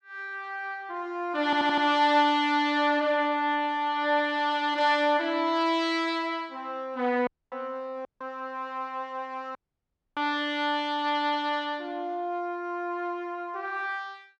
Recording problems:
audio stuttering; at 1.5 s
dropout; at 7.5 s, at 8 s and at 9.5 s for 0.5 s

